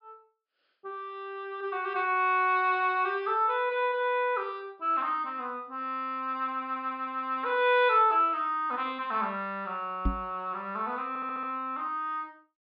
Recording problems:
treble missing; nothing above 5.2 kHz
microphone thump; at 10 s; peak +3 dB vs average level
audio stuttering; at 11 s

